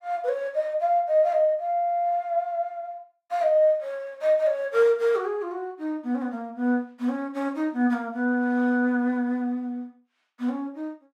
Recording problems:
none

